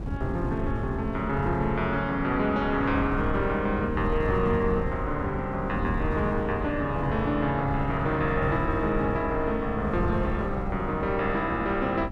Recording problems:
wind noise; below 180 Hz, SNR 6 dB

